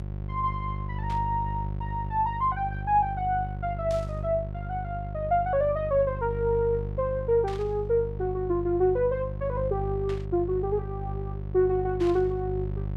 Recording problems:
hum; 50 Hz, harmonics up to 550 Hz, SNR 7 dB
static burst; 5 times, first at 1 s; peak -11 dB vs average level

